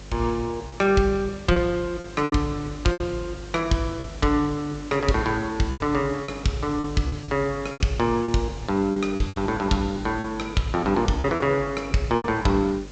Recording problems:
treble cut off; nothing above 8 kHz
hum; 50 Hz, harmonics up to 550 Hz, SNR 18 dB
background hiss; slope -2 dB per octave, SNR 21 dB
lost packets; 8% of the sound replaced, filled with repeated pitch periods

